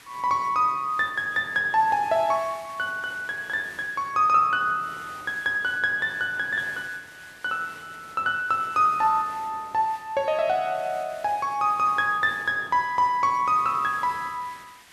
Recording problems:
hiss; SNR 23 dB

